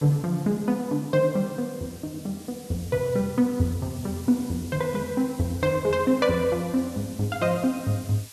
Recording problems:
background hiss; slope +2 dB per octave, SNR 19 dB

